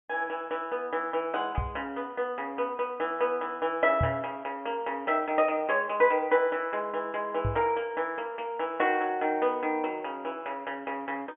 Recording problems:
low-pass filter; nothing above 3.3 kHz
microphone thump; at 1.5 s, at 4 s and at 7.5 s; peak +3 dB vs average level

